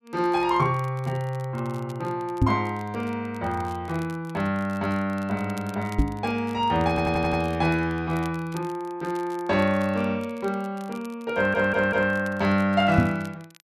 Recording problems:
crackle; vinyl, SNR 25 dB
microphone bump; at 2.5 s, at 6 s and at 13 s; peak +8 dB vs average level
audio stuttering; at 7 s and at 11 s

